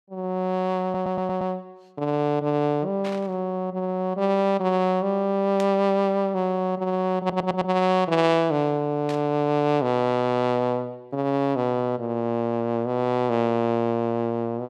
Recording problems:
audio stuttering; at 1 s and at 7 s
burst of static; at 3 s, at 5.5 s and at 9 s; peak -9 dB vs average level

